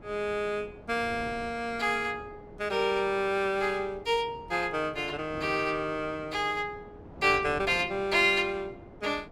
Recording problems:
wind on the microphone; below 510 Hz, SNR 19 dB

